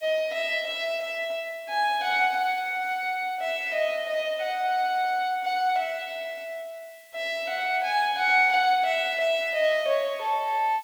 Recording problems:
hiss; slope +3 dB per octave, SNR 27 dB

